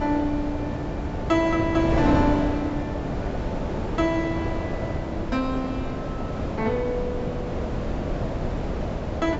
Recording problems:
treble cut off; nothing above 8 kHz
wind noise; below 570 Hz, SNR 2 dB

